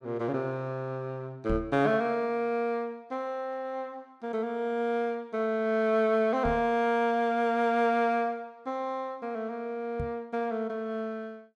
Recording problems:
microphone thump; at 1.5 s, at 6.5 s and at 10 s; peak -1 dB vs average level

